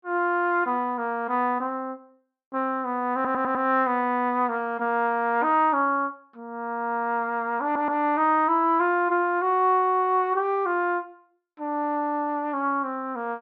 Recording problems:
audio stuttering; at 3 s and at 7.5 s

